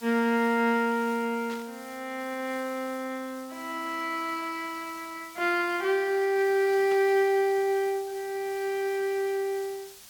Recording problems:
background hiss; slope +2 dB per octave, SNR 20 dB
static burst; at 1.5 s and at 7 s; peak -12 dB vs average level

